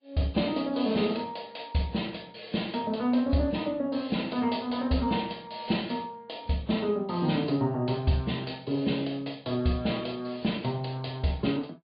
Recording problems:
treble missing; nothing above 4.8 kHz
lossy compression; AAC, log-spectral distance 4 dB

